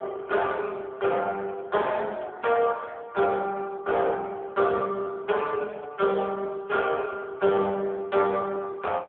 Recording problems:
telephone audio; 220 Hz to 2.5 kHz, AMR-NB

